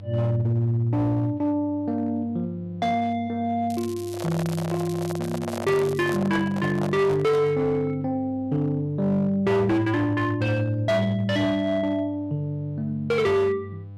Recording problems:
distorted audio; hard clipping, signal-to-distortion ratio 11 dB
hum; 50 Hz, harmonics up to 500 Hz, SNR 17 dB
crackling; from 3.5 to 6 s; loose cable, SNR 19 dB
handling noise; from 4 to 7.5 s; peak -4 dB vs average level

